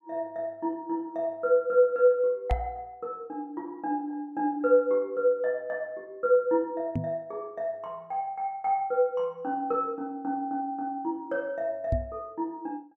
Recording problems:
microphone bump; at 2.5 s, at 7 s and at 12 s; peak +4 dB vs average level

